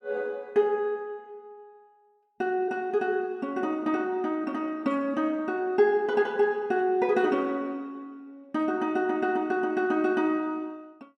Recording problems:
none

